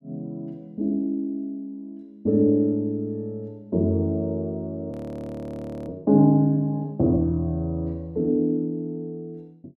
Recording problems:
frozen audio; at 5 s for 1 s

